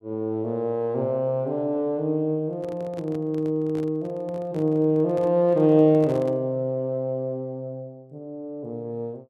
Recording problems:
handling noise; from 2.5 to 6.5 s; peak -10 dB vs average level

